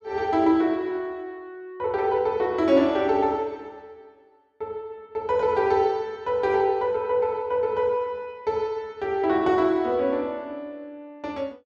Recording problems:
none

